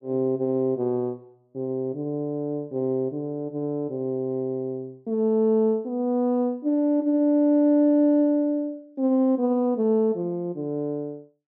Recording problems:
none

